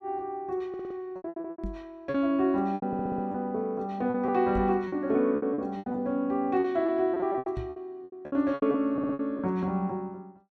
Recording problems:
lost packets; 14% of the sound replaced, filled with repeated pitch periods
stutter; at 0.5 s, at 3 s and at 9 s
knock on the microphone; at 1.5 s, at 4.5 s and at 7.5 s; peak -4 dB vs average level

